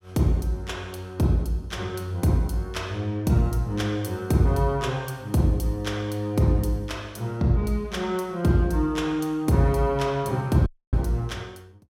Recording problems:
audio cutting out; at 11 s

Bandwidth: 16 kHz